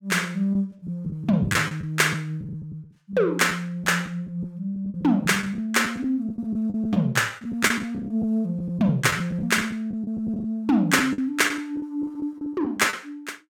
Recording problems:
lost packets; 11% of the sound replaced, filled with the last packet

